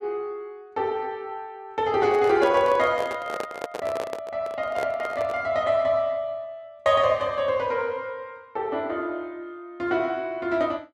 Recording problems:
handling noise; from 2 to 5.5 s; peak -2 dB vs average level

